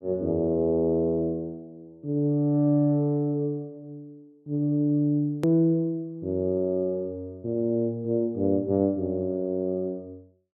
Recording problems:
hard cut with a click; at 5.5 s

